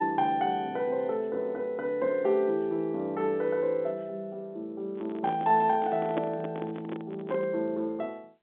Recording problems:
telephone audio; 190 Hz to 4 kHz, G.711
handling noise; from 5 to 7.5 s; peak +1 dB vs average level

